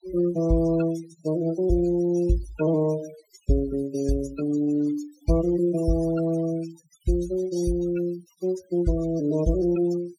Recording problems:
noise reduction artefacts; signal-to-artefact ratio 15 dB

